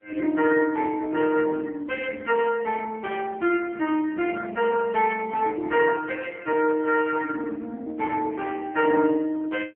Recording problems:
phone line; 240 Hz to 3.5 kHz, AMR-NB

